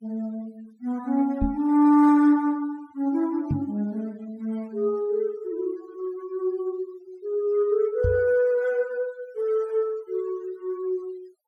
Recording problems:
denoising artefacts; signal-to-artefact ratio 26 dB
knock on the microphone; at 1.5 s, at 3.5 s and at 8 s; peak +2 dB vs average level

